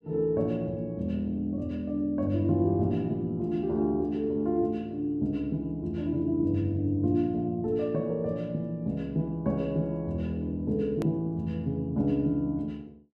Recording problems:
hard cut with a click; at 11 s

